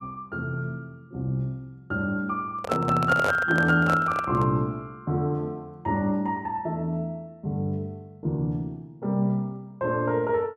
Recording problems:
handling noise; from 2.5 to 4.5 s; peak +3 dB vs average level

